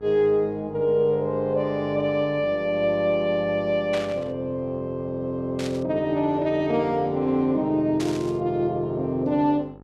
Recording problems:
hum; 50 Hz, harmonics up to 1.4 kHz, SNR 24 dB
burst of static; at 4 s, at 5.5 s and at 8 s; peak -6 dB vs average level

